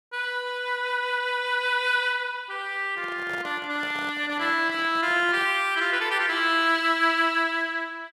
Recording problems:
microphone handling noise; from 3 to 5.5 s; peak -11 dB vs average level

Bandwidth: 14.5 kHz